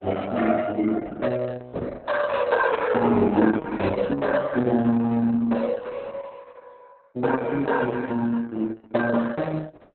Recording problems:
lossy codec; Opus, log-spectral distance 4 dB, nothing above 4 kHz

